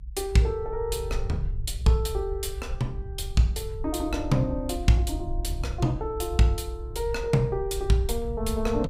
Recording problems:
rumble; below 68 Hz, SNR 8 dB

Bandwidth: 15.5 kHz